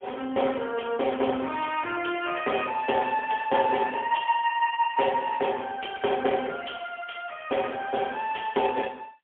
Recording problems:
telephone audio; 280 Hz to 3.3 kHz, AMR-NB, then MP3

